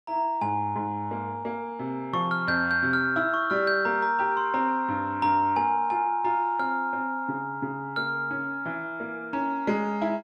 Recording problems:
none

